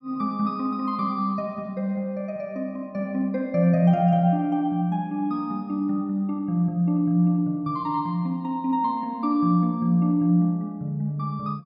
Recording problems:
none

